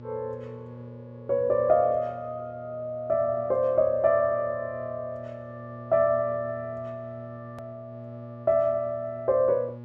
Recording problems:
hum; 60 Hz, harmonics up to 840 Hz, SNR 17 dB
edit click; at 7.5 s

